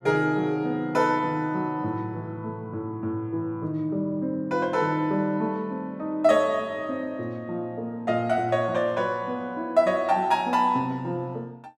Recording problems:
none

